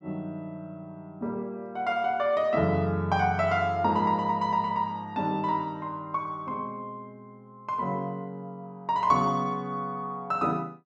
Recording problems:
none

